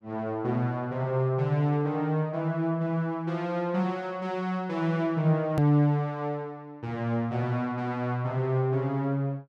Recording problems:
hard cut with a click; at 5.5 s

